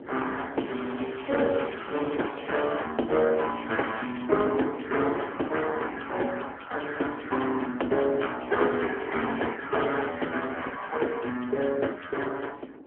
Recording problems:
phone line; 220 Hz to 3.3 kHz, AMR-NB
wind noise; below 450 Hz, SNR 19 dB
crackling; from 0.5 to 3 s and at 4 s; loose cable, SNR 18 dB

